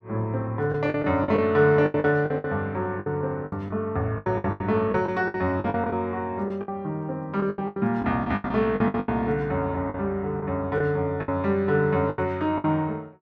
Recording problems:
lost packets; 14% of the sound replaced, filled with the last packet

